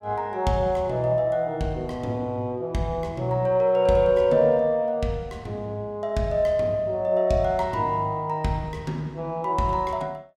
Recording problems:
none

